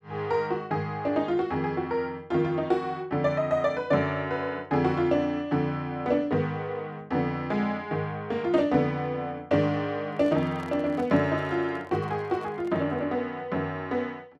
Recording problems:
microphone handling noise; from 10 to 13 s; peak -11 dB vs average level

